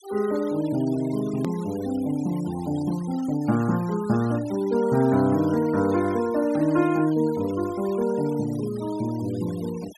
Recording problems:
noise reduction artefacts; signal-to-artefact ratio 20 dB
click at an edit; at 1.5 s

